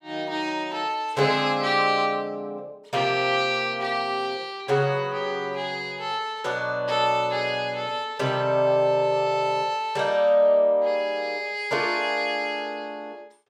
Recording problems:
none

